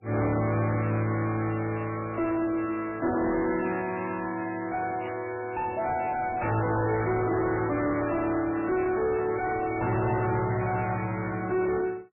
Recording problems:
lossy codec; MP3, log-spectral distance 4 dB, nothing above 2.2 kHz
distortion; soft clipping, signal-to-distortion ratio 7 dB
burst of static; at 5 s; peak -11 dB vs average level

